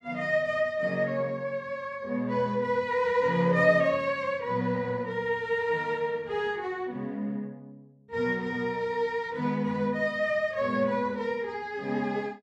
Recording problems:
none

